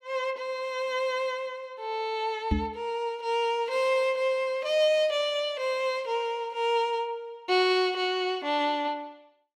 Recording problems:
microphone bump; at 2.5 s; peak +5 dB vs average level

